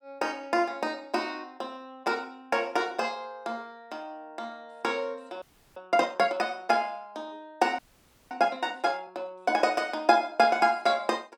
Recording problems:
audio freezing; at 5.5 s and at 8 s for 0.5 s

